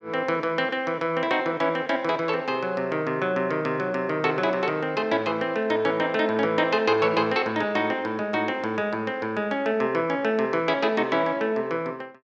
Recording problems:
none

